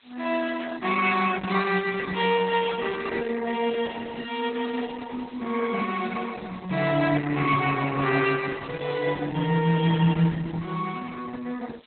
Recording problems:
lossy compression; Opus, log-spectral distance 12 dB, nothing above 3.6 kHz
background hiss; SNR 29 dB

